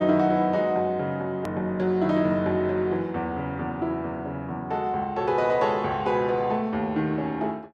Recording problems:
click at an edit; at 1.5 s

